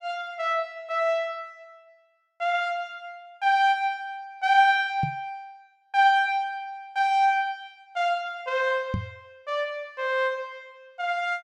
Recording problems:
knock on the microphone; at 5 s and at 9 s; peak 0 dB vs average level

